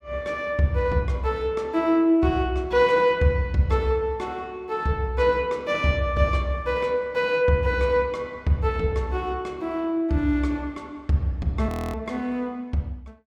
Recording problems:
frozen audio; at 12 s

